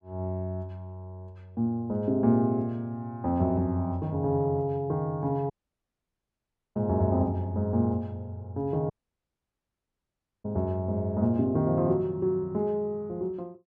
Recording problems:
audio cutting out; at 5.5 s for 1.5 s and at 9 s for 1.5 s

